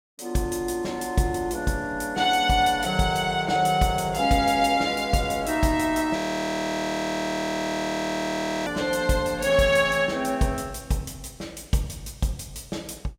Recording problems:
audio freezing; at 6 s for 2.5 s

